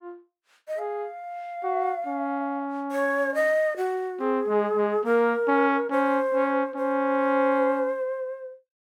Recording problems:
none

